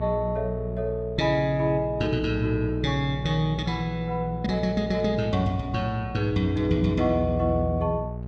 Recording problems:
hum; 60 Hz, harmonics up to 660 Hz, SNR 8 dB

